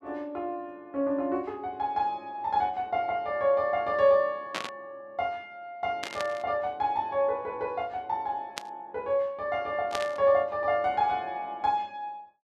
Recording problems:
burst of static; 4 times, first at 4.5 s; peak 0 dB vs average level

